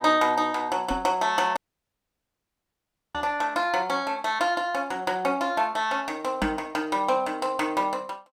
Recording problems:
microphone thump; at 1 s, at 3 s and at 6.5 s; peak -1 dB vs average level
audio cutting out; at 1.5 s for 1.5 s

